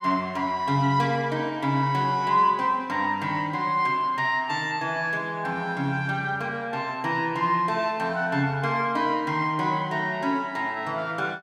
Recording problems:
none

